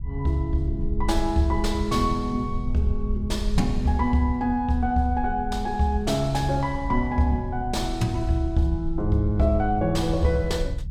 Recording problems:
low-frequency rumble; below 70 Hz, SNR 8 dB

